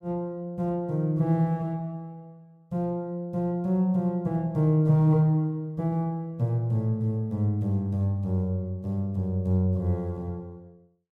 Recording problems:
none

